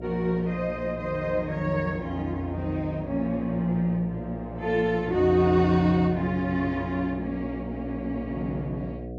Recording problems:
hum; 60 Hz, harmonics up to 720 Hz, SNR 11 dB

